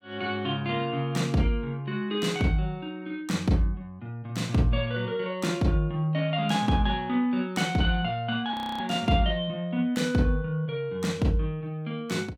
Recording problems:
audio freezing; at 8.5 s

